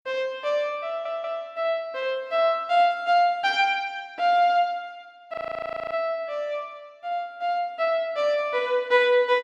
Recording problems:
stutter; at 1 s
frozen audio; at 5.5 s for 0.5 s

